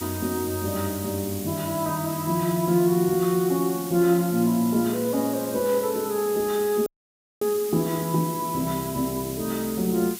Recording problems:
hiss; SNR 10 dB
dropout; at 7 s for 0.5 s

